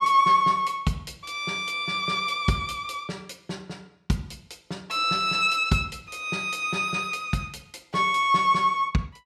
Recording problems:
none

